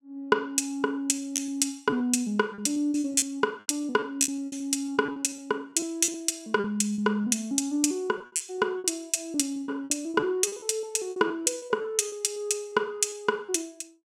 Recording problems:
packet loss; 12% of the sound replaced, filled with repeated pitch periods

